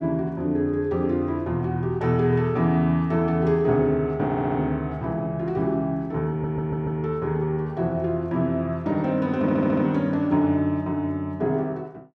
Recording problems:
audio stuttering; at 4 s, at 6.5 s and at 9.5 s

